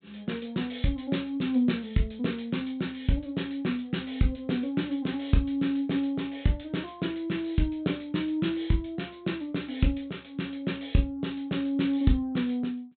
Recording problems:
treble cut off; nothing above 4 kHz

